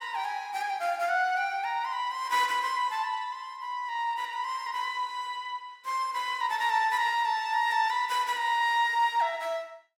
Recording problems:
none

